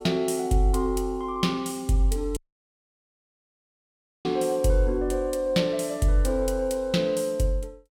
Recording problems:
audio cutting out; at 2.5 s for 2 s

